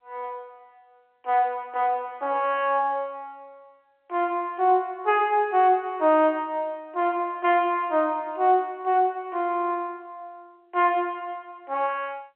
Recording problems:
telephone audio; 280 Hz to 3.3 kHz, G.711

